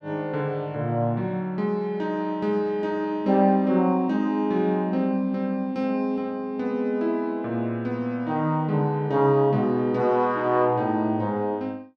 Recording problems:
none

